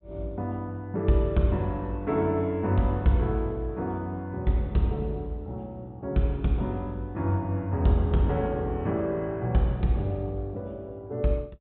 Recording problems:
low-pass filter; nothing above 4 kHz

